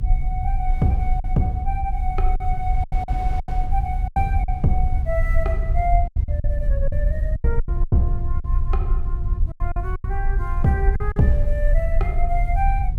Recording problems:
rumble; below 62 Hz, SNR -2 dB
wind noise; below 460 Hz, SNR 21 dB
lost packets; 9% of the sound replaced, filled with silence

